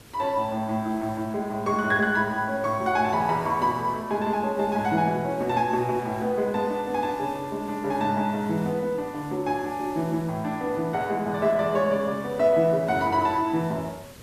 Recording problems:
hiss; SNR 22 dB

